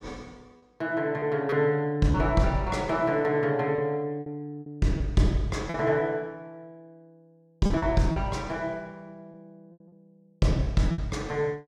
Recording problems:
lost packets; 5% of the sound replaced, filled with repeated pitch periods

